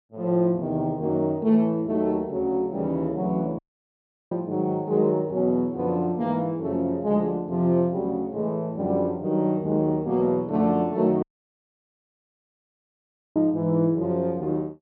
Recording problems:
dropout; at 3.5 s for 0.5 s and at 11 s for 2 s

